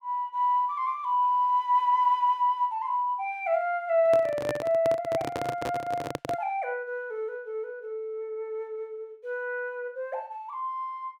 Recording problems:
microphone handling noise; from 4 to 6.5 s; peak 0 dB vs average level

